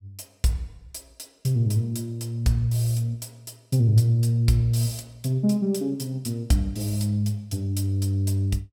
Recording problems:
none

